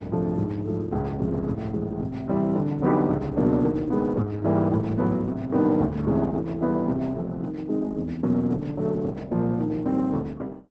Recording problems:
lossy compression; Opus, log-spectral distance 2 dB, nothing above 7.8 kHz

